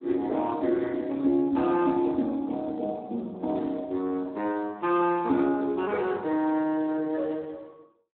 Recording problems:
telephone audio; 170 Hz to 3.6 kHz, Speex

